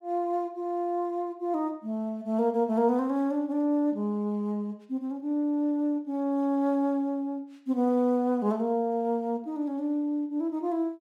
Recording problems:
none

